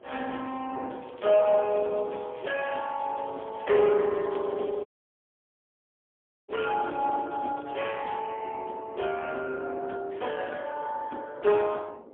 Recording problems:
phone line; 220 Hz to 3.4 kHz, AMR-NB, then MP3
wind noise; below 600 Hz, SNR 21 dB
crackling; from 1 to 8 s; loose cable, SNR 28 dB
dropout; at 5 s for 1.5 s

